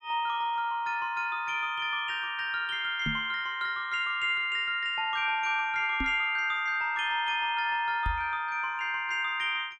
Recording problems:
microphone bump; at 3 s, at 6 s and at 8 s; peak -1 dB vs average level

